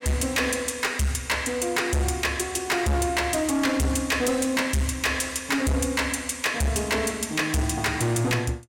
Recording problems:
distorted audio; hard clipping, signal-to-distortion ratio 7 dB

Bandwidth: 16.5 kHz